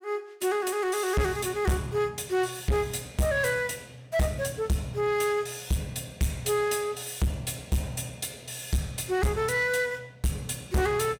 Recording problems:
distortion; soft clipping, signal-to-distortion ratio 7 dB

